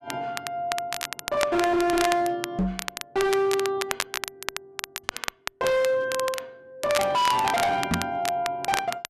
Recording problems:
distorted audio; hard clipping, signal-to-distortion ratio 7 dB
crackle; vinyl, SNR 7 dB
microphone bump; at 2.5 s and at 8 s; peak +3 dB vs average level

